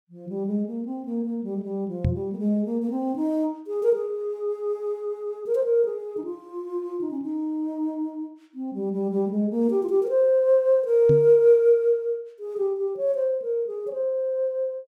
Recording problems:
microphone bump; at 2 s and at 11 s; peak +4 dB vs average level

